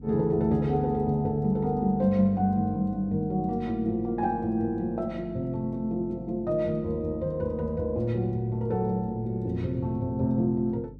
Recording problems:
hum; 50 Hz, harmonics up to 300 Hz, SNR 18 dB

